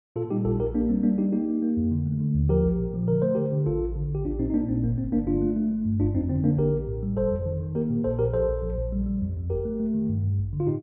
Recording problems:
none

